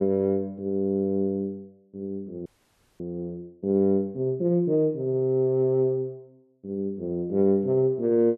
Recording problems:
frozen audio; at 2.5 s for 0.5 s

